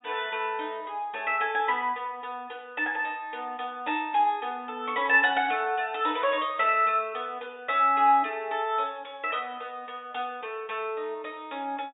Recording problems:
treble missing; nothing above 4 kHz

